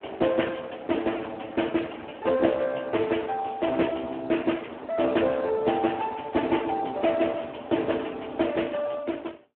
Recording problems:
phone line; 240 Hz to 3.1 kHz, Speex

